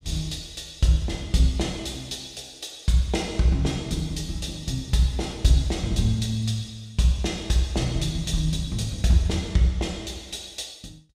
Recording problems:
none

